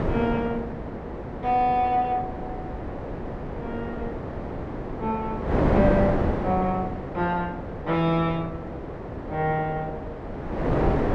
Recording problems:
wind noise; below 610 Hz, SNR 3 dB

